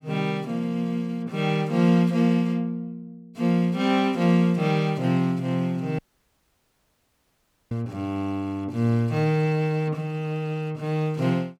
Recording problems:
audio cutting out; at 6 s for 1.5 s

